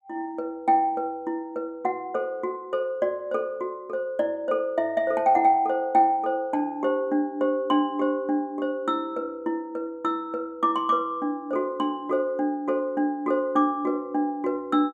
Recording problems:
none

